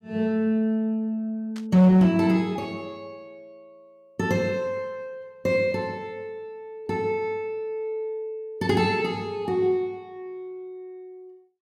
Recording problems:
distorted audio; hard clipping, signal-to-distortion ratio 11 dB
static burst; at 1.5 s; peak -14 dB vs average level

